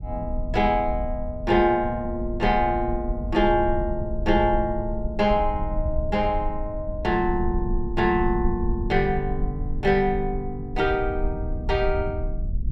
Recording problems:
low-frequency rumble; below 68 Hz, SNR 7 dB

